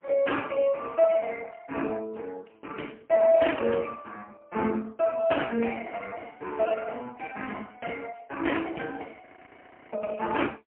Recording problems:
phone line; 260 Hz to 3.1 kHz, AMR-NB, then MP3
audio freezing; at 9.5 s for 0.5 s

